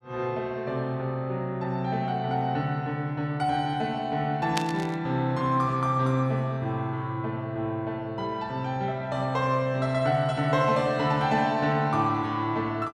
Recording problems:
burst of static; at 4.5 s; peak +2 dB vs average level

